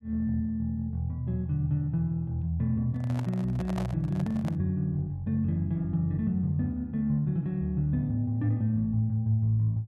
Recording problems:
microphone handling noise; from 3 to 4.5 s; peak -6 dB vs average level

